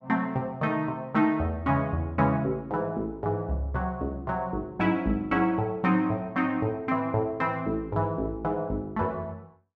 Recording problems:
none

